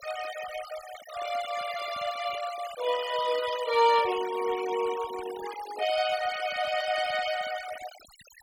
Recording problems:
noise reduction artefacts; signal-to-artefact ratio 12 dB

